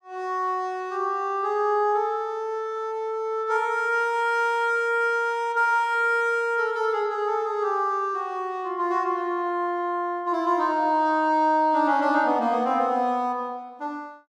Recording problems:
none

